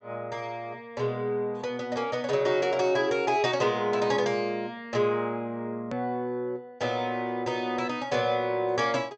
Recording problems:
treble missing; nothing above 8 kHz
click at an edit; at 6 s

